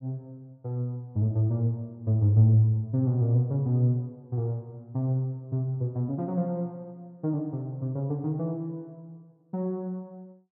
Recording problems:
none

